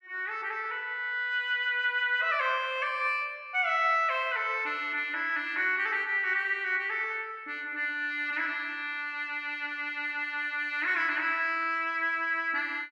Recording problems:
none

